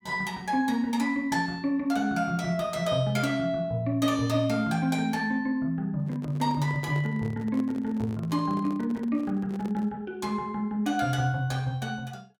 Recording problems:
handling noise; from 6 to 10 s; peak -9 dB vs average level

